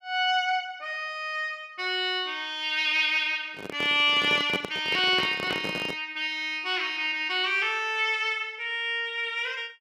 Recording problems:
handling noise; from 3.5 to 6 s; peak -3 dB vs average level

